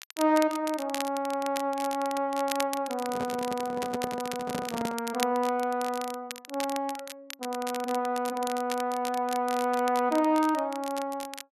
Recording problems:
crackling; vinyl, SNR 11 dB
microphone handling noise; from 3 to 5 s; peak -2 dB vs average level

